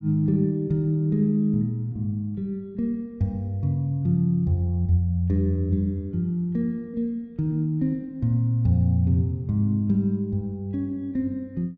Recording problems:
none

